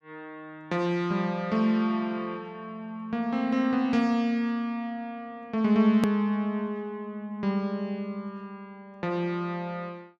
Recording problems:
edit click; at 6 s

